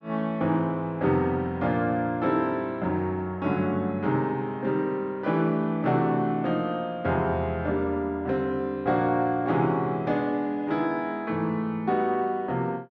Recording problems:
none

